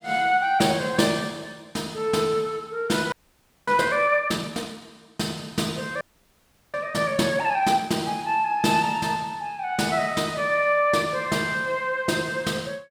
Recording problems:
frozen audio; at 3 s for 0.5 s and at 6 s for 0.5 s

